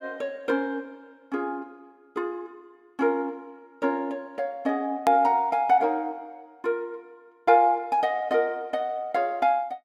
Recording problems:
click at an edit; at 5 s

